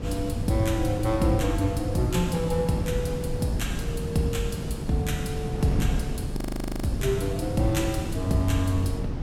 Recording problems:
wind noise; below 220 Hz, SNR 5 dB
audio freezing; at 6.5 s

